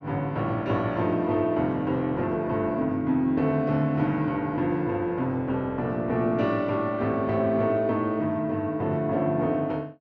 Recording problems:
none

